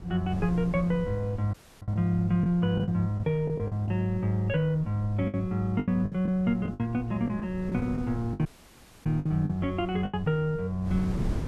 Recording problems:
wind noise; below 180 Hz, SNR 14 dB
lost packets; 9% of the sound replaced, filled with the last packet
audio cutting out; at 1.5 s and at 8.5 s for 0.5 s

